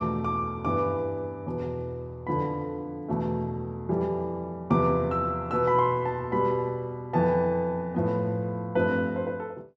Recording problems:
none

